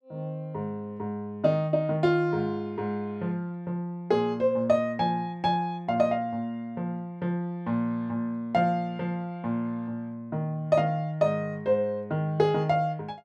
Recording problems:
none

